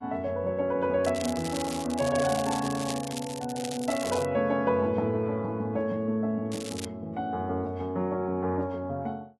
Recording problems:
codec artefacts; AAC, log-spectral distance 4 dB
crackle; from 1 to 3.5 s, at 3.5 s and at 6.5 s; loose cable, SNR 10 dB

